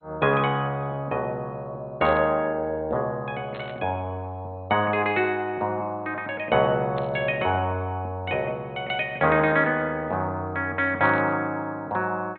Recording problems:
codec artefacts; MP2, log-spectral distance 2 dB
burst of static; 4 times, first at 2 s; peak -11 dB vs average level

